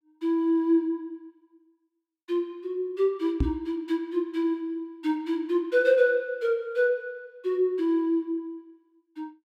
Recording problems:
microphone bump; at 3.5 s; peak +5 dB vs average level

